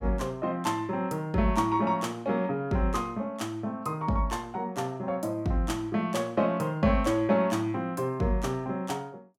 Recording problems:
none

